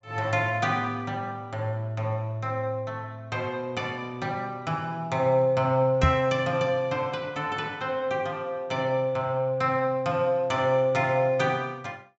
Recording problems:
treble missing; nothing above 8 kHz
microphone thump; at 6 s; peak +8 dB vs average level

